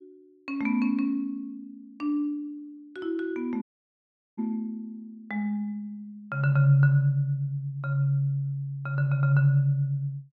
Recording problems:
audio cutting out; at 3.5 s for 1 s

